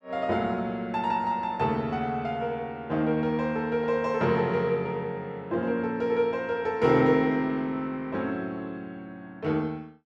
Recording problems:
none

